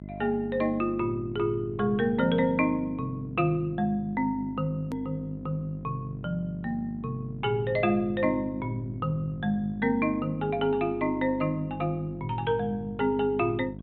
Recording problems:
treble missing; nothing above 4 kHz
mains hum; 50 Hz, harmonics up to 700 Hz, SNR 12 dB
edit click; at 5 s

